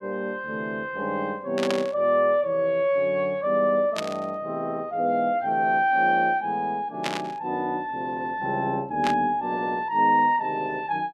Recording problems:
static burst; 4 times, first at 1.5 s; peak 0 dB vs average level

